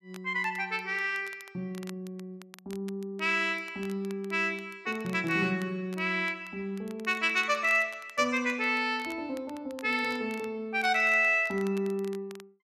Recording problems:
crackle; vinyl, SNR 24 dB

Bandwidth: 13.5 kHz